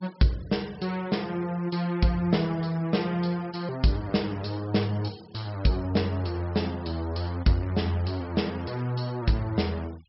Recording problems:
treble cut off; nothing above 5.5 kHz
noise reduction artefacts; signal-to-artefact ratio 24 dB

